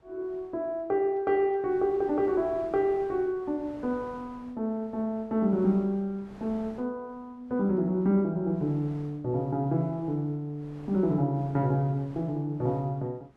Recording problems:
wind on the microphone; below 890 Hz, SNR 24 dB

